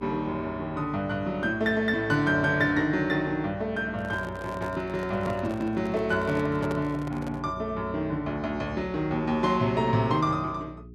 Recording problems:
electrical hum; 60 Hz, harmonics up to 420 Hz, SNR 18 dB
microphone handling noise; from 4 to 7.5 s; peak -4 dB vs average level

